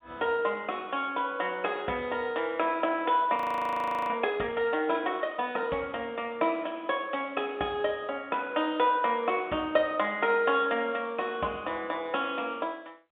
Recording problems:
phone line; 190 Hz to 3.6 kHz, G.711
audio freezing; at 3.5 s for 0.5 s

